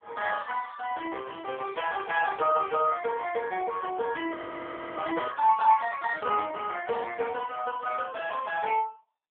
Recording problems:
phone line; 280 Hz to 3.5 kHz, AMR-NB
frozen audio; at 4.5 s for 0.5 s

